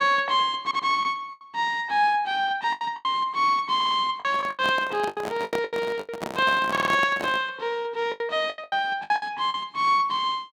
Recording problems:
lost packets; 11% of the sound replaced, filled with the last packet
audio stuttering; at 0.5 s, at 4 s and at 6.5 s
handling noise; from 4.5 to 7.5 s; peak -2 dB vs average level

